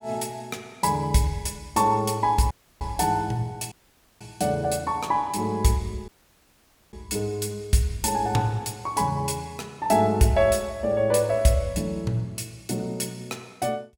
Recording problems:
audio cutting out; at 2.5 s, at 3.5 s and at 6 s for 1 s

